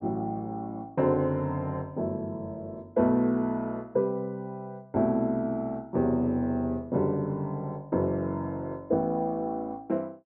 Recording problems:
none

